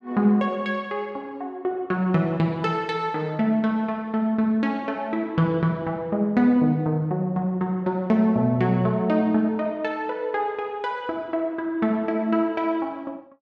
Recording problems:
none

